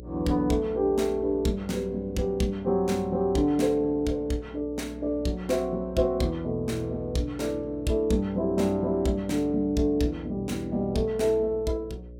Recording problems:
electrical hum; 60 Hz, harmonics up to 600 Hz, SNR 17 dB

